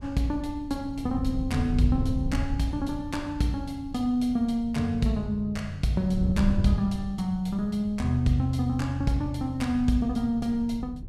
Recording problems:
wind noise; below 120 Hz, SNR 8 dB

